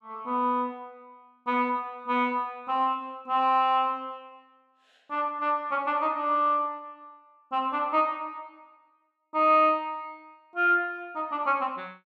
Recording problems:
none

